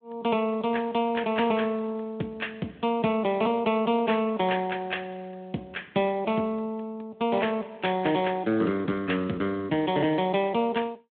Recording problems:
telephone audio; 130 Hz to 3.5 kHz, Speex

